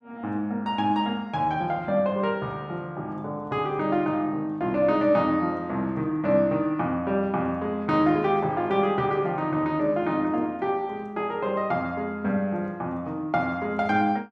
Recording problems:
none

